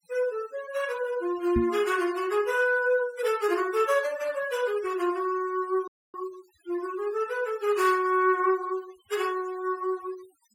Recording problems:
denoising artefacts; signal-to-artefact ratio 17 dB
knock on the microphone; at 1.5 s; peak +3 dB vs average level
audio cutting out; at 6 s

